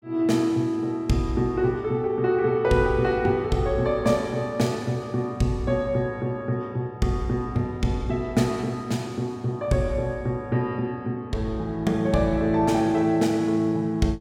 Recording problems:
none

